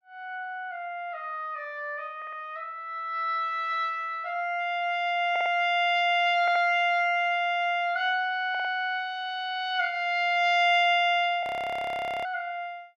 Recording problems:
stutter; 4 times, first at 2 s
frozen audio; at 11 s for 1 s

